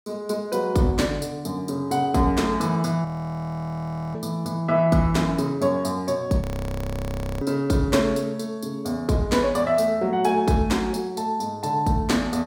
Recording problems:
audio freezing; at 3 s for 1 s and at 6.5 s for 1 s

